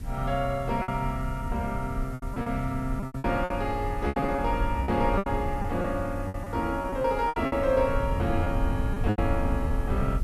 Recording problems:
background hiss; SNR 25 dB
rumble; below 96 Hz, SNR 5 dB
lost packets; 11% of the sound replaced, filled with repeated pitch periods

